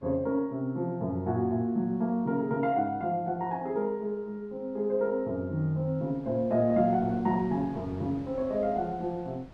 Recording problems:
wind on the microphone; below 580 Hz, SNR 21 dB

